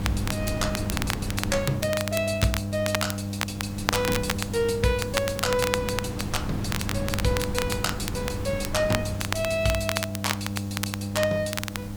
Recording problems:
hum; 50 Hz, harmonics up to 800 Hz, SNR 5 dB
background hiss; SNR 21 dB
wind noise; below 270 Hz, SNR 7 dB
crackle; vinyl, SNR 4 dB

